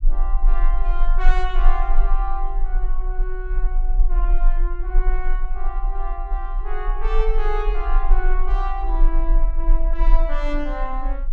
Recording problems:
low-frequency rumble; below 32 Hz, strongest tone 20 Hz, SNR -7 dB

